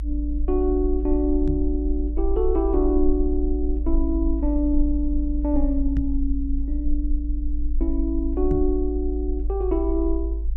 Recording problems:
low-frequency rumble; below 52 Hz, SNR 2 dB
microphone thump; at 1.5 s, at 6 s and at 8.5 s; peak +1 dB vs average level

